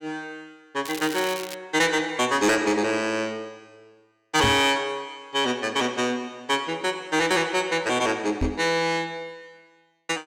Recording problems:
distorted audio; soft clipping, signal-to-distortion ratio 11 dB
crackling; at 1 s; loose cable, SNR 12 dB
microphone thump; at 4.5 s and at 8.5 s; peak +2 dB vs average level

